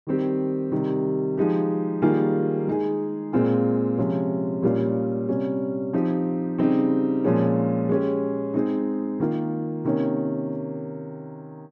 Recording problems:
none

